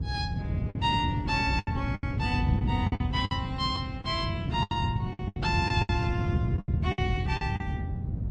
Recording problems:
lossy compression; Opus, then MP3, log-spectral distance 2 dB
low-frequency rumble; below 210 Hz, SNR 6 dB
wind on the microphone; below 160 Hz, SNR 0 dB
lost packets; 12% of the sound replaced, filled with the last packet

